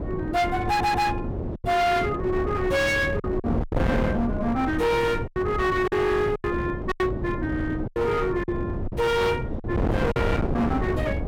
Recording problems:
distorted audio; hard clipping, signal-to-distortion ratio 8 dB
wind on the microphone; below 430 Hz, SNR 4 dB
packet loss; 5% of the sound replaced, filled with silence
audio stuttering; at 0.5 s

